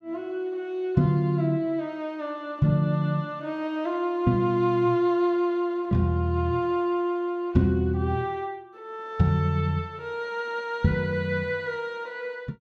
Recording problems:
none

